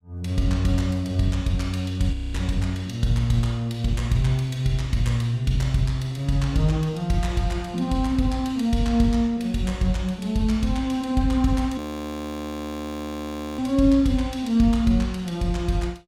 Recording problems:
frozen audio; at 2 s and at 12 s for 2 s

